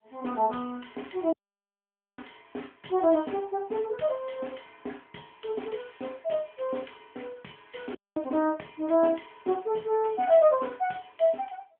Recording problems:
phone line; 220 Hz to 3.4 kHz, AMR-NB
dropout; at 1.5 s for 1 s and at 8 s

